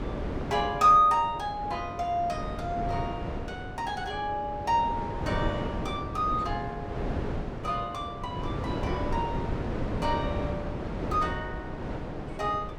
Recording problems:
wind noise; below 490 Hz, SNR 6 dB

